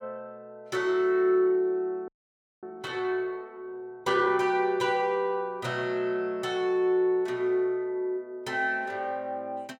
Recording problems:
frozen audio; at 2 s for 0.5 s

